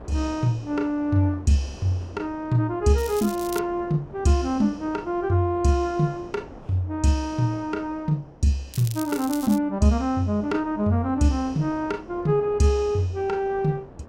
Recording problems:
wind on the microphone; below 650 Hz, SNR 20 dB
crackling; at 3 s and at 8.5 s; loose cable, SNR 14 dB

